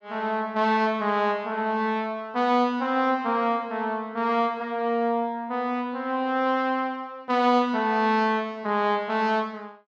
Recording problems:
none

